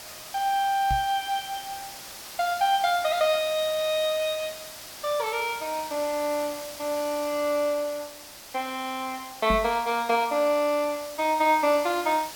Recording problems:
background hiss; slope 0 dB per octave, SNR 13 dB
microphone bump; at 1 s and at 9.5 s; peak -1 dB vs average level

